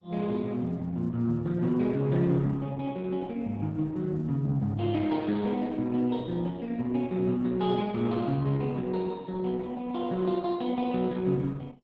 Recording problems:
lossy compression; MP2, then Opus, log-spectral distance 3 dB

